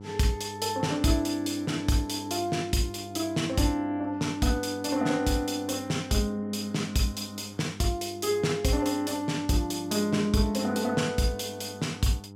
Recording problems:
mains hum; 50 Hz, harmonics up to 1 kHz, SNR 16 dB

